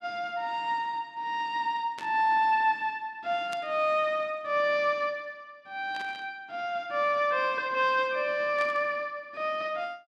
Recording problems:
burst of static; 4 times, first at 2 s; peak -9 dB vs average level

